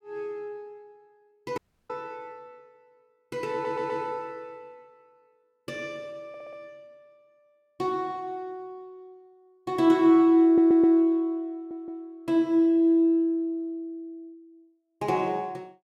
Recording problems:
dropout; at 1.5 s
audio stuttering; 4 times, first at 3.5 s

